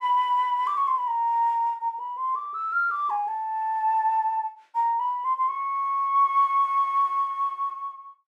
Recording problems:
none

